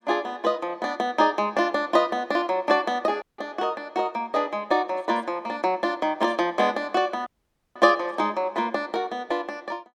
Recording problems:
audio cutting out; at 3 s and at 7.5 s

